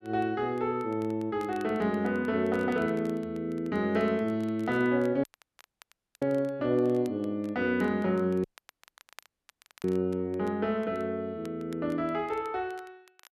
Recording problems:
crackling; vinyl, SNR 27 dB
dropout; at 5 s for 1 s and at 8.5 s for 1.5 s

